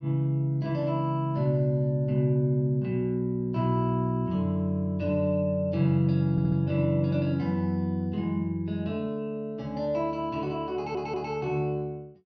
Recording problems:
stutter; at 6.5 s and at 11 s

